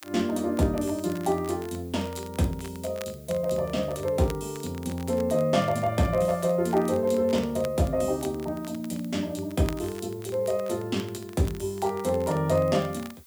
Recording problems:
hiss; slope +2 dB per octave, SNR 26 dB
crackle; vinyl, SNR 21 dB

